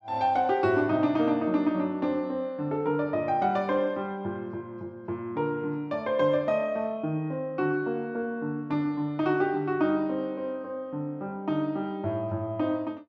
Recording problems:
none

